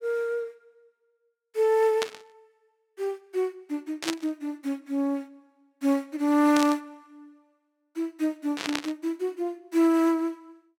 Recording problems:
burst of static; 4 times, first at 2 s; peak +2 dB vs average level

